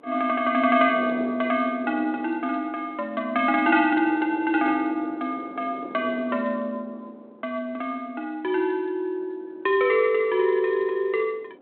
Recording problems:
phone line; 280 Hz to 3.6 kHz, G.726
wind on the microphone; below 550 Hz, SNR 18 dB

